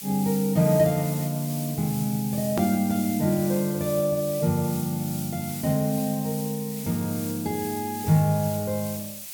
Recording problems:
background hiss; SNR 10 dB
hard cut with a click; at 2.5 s

